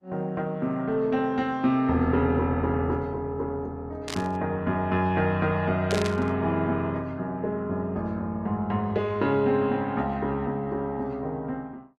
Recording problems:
codec artefacts; Opus, log-spectral distance 2 dB
static burst; at 4 s and at 6 s; peak -2 dB vs average level

